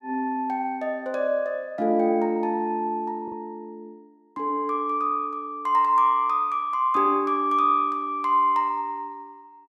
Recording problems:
packet loss; 0.4% of the sound replaced, filled with the last packet

